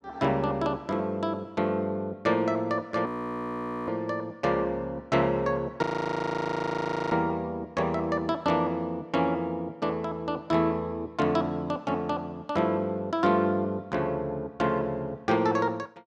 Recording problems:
audio freezing; at 3 s for 1 s and at 6 s for 1.5 s

